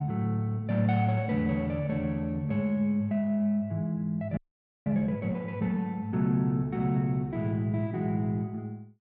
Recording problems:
frozen audio; at 4.5 s

